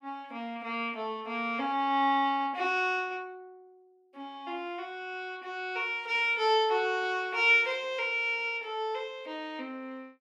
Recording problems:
none

